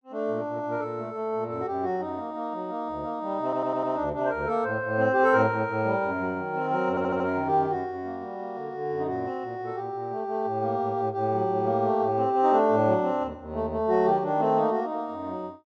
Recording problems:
stutter; at 3.5 s and at 7 s

